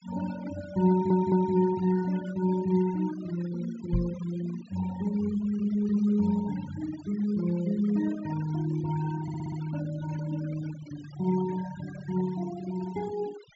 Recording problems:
treble missing; nothing above 8 kHz
noise reduction artefacts; signal-to-artefact ratio 17 dB
stutter; at 1 s and at 9 s
microphone bump; at 4 s; peak +4 dB vs average level

